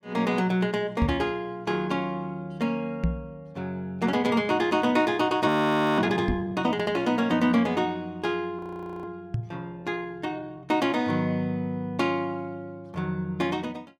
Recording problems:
knock on the microphone; 4 times, first at 1 s; peak +4 dB vs average level
audio freezing; at 5.5 s for 0.5 s and at 8.5 s

